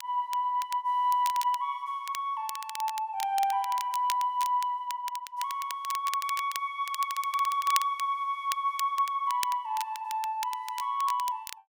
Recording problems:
crackling; vinyl, SNR 12 dB

